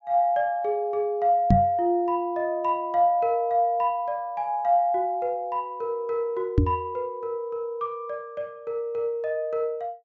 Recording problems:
treble cut off; nothing above 8 kHz
microphone thump; at 1.5 s and at 6.5 s; peak +9 dB vs average level

